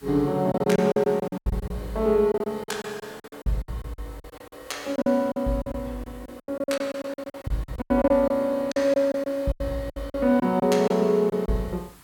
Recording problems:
hiss; SNR 27 dB
packet loss; 16% of the sound replaced, filled with silence

